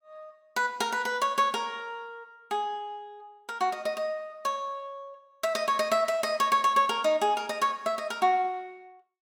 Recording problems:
none

